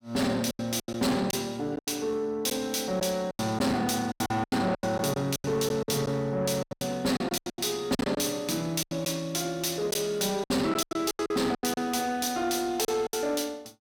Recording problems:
distorted audio; soft clipping, signal-to-distortion ratio 10 dB
lost packets; 14% of the sound replaced, filled with silence

